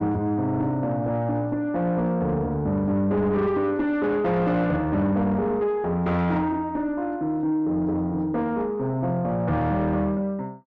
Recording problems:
distorted audio; soft clipping, signal-to-distortion ratio 10 dB

